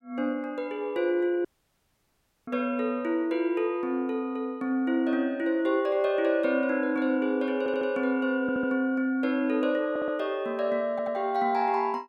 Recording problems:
audio cutting out; at 1.5 s for 1 s
stutter; 4 times, first at 7.5 s

